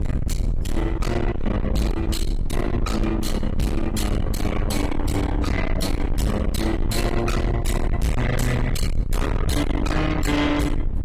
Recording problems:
codec artefacts; AAC, log-spectral distance 2 dB
distorted audio; soft clipping, signal-to-distortion ratio 6 dB
low-frequency rumble; below 170 Hz, SNR 2 dB

